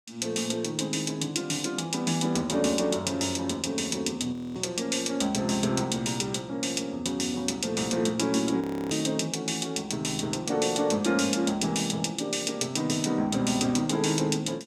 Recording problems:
frozen audio; at 4.5 s and at 8.5 s

